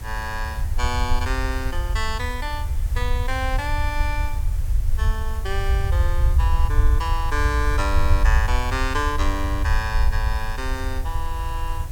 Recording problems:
background hiss; slope -3 dB per octave, SNR 15 dB
rumble; below 70 Hz, SNR -3 dB

